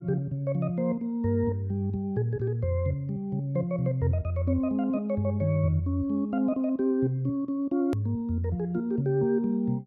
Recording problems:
click at an edit; at 8 s

